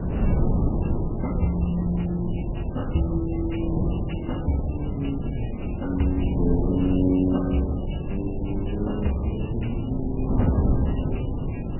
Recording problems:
lossy compression; MP3, log-spectral distance 5 dB, nothing above 2.9 kHz
wind on the microphone; below 220 Hz, SNR 0 dB

